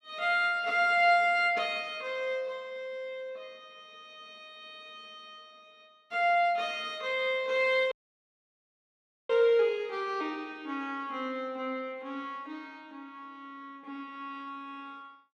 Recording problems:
dropout; at 8 s for 1.5 s

